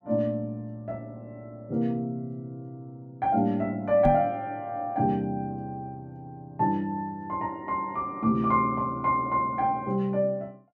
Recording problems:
microphone bump; at 4 s; peak +5 dB vs average level

